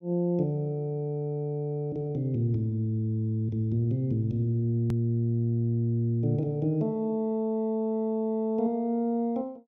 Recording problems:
click at an edit; at 5 s

